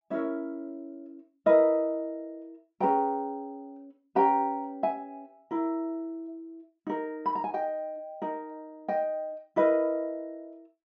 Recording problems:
treble cut off; nothing above 8 kHz

